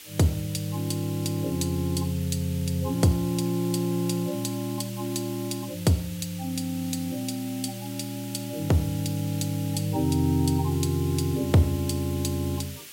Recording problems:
hiss; SNR 14 dB

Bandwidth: 16 kHz